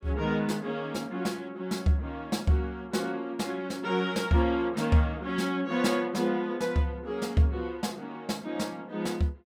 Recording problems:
none

